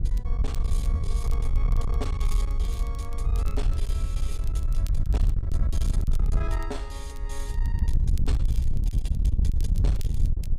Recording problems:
distorted audio; soft clipping, signal-to-distortion ratio 7 dB
wind noise; below 68 Hz, SNR -13 dB
crackle; vinyl, SNR 12 dB

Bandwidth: 15.5 kHz